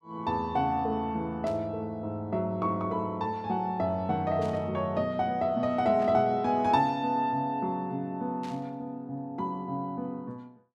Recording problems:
static burst; 4 times, first at 1.5 s; peak -13 dB vs average level

